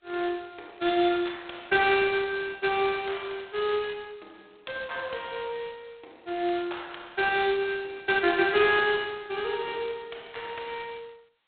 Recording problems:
telephone audio; 240 Hz to 3.9 kHz, G.726

